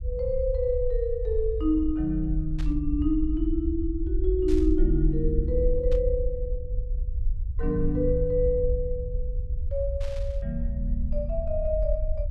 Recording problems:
low-frequency rumble; below 60 Hz, SNR 3 dB
static burst; 4 times, first at 2.5 s; peak -11 dB vs average level

